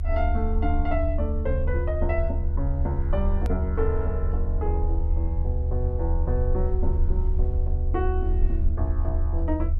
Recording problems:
rumble; below 76 Hz, strongest tone 30 Hz, SNR -5 dB
hard cut with a click; at 3.5 s

